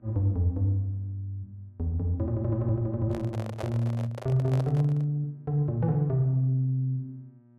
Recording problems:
electrical hum; 60 Hz, harmonics up to 960 Hz, SNR 30 dB
handling noise; from 3 to 5 s; peak -4 dB vs average level

